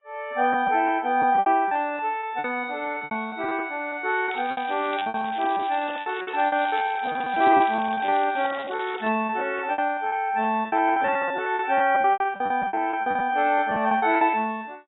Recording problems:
codec artefacts; AAC, log-spectral distance 5 dB, nothing above 3.7 kHz
lost packets; 18% of the sound replaced, filled with repeated pitch periods
crackle; from 4.5 to 9 s; loose cable, SNR 18 dB

